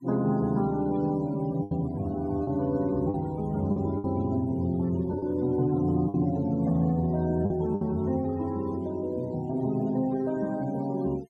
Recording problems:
noise reduction artefacts; signal-to-artefact ratio 24 dB
lost packets; 4% of the sound replaced, filled with the last packet

